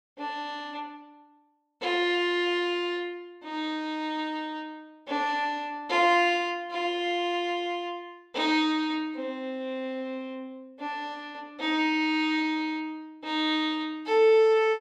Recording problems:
none

